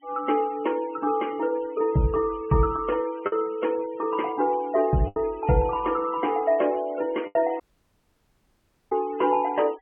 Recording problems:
treble missing; nothing above 3.1 kHz
noise reduction artefacts; signal-to-artefact ratio 22 dB
lost packets; 2% of the sound replaced, filled with the last packet
dropout; at 7.5 s for 1.5 s

